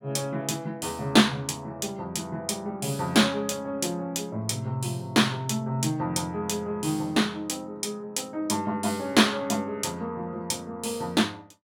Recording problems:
none

